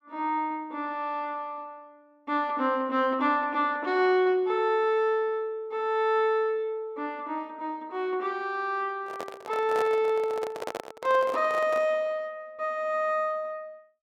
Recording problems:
microphone handling noise; from 9 to 12 s; peak -3 dB vs average level

